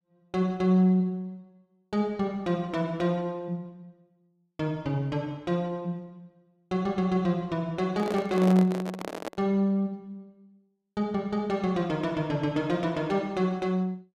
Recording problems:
microphone handling noise; from 8 to 9.5 s; peak -2 dB vs average level

